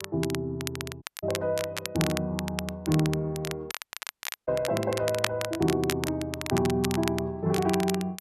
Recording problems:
crackling; vinyl, SNR 7 dB
audio cutting out; at 1 s and at 3.5 s for 0.5 s

